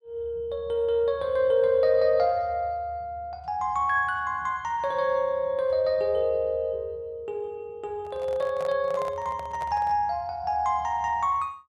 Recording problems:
handling noise; from 8 to 10 s; peak -8 dB vs average level

